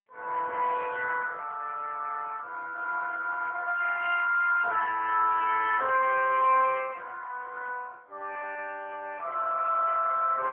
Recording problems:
telephone audio; 340 Hz to 3.5 kHz, AMR-NB

